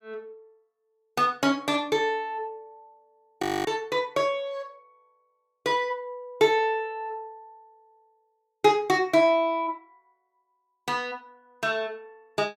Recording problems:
frozen audio; at 3.5 s

